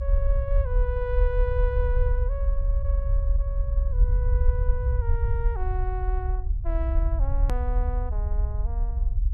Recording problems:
low-frequency rumble; below 62 Hz, strongest tone 36 Hz, SNR -9 dB
edit click; at 7.5 s

